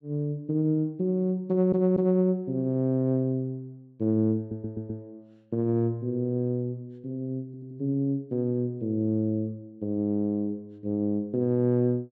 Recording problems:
audio stuttering; at 1.5 s, at 4.5 s and at 7.5 s

